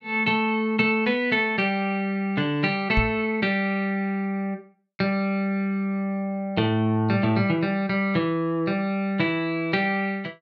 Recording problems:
microphone bump; at 3 s; peak +3 dB vs average level

